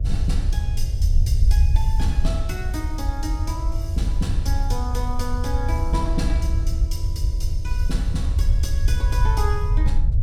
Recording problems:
hum; 60 Hz, harmonics up to 660 Hz, SNR 21 dB
low-frequency rumble; below 74 Hz, SNR -8 dB

